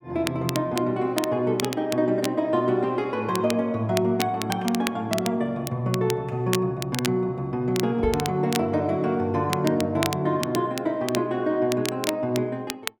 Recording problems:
crackling; vinyl, SNR 10 dB
microphone bump; at 8 s; peak -2 dB vs average level

